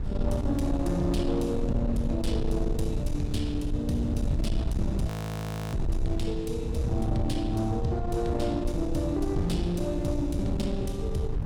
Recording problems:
distorted audio; soft clipping, signal-to-distortion ratio 12 dB
hum; 60 Hz, harmonics up to 1.8 kHz, SNR 27 dB
rumble; below 120 Hz, SNR 3 dB
audio freezing; at 5 s for 0.5 s

